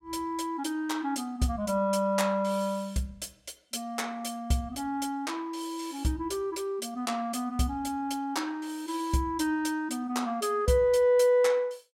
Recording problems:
none

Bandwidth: 16 kHz